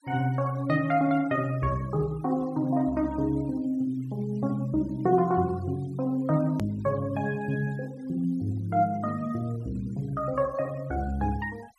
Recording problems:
noise reduction artefacts; signal-to-artefact ratio 26 dB
click at an edit; at 6.5 s

